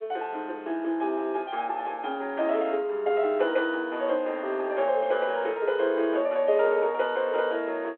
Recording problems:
phone line; 280 Hz to 3.5 kHz, G.726

